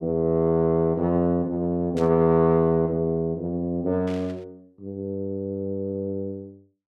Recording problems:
burst of static; at 2 s and at 4 s; peak -14 dB vs average level

